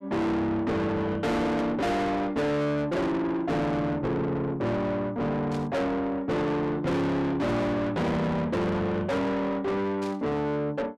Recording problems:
distortion; soft clipping, signal-to-distortion ratio 6 dB
static burst; 4 times, first at 1.5 s; peak -11 dB vs average level

